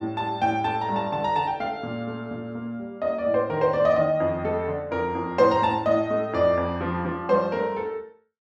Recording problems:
none

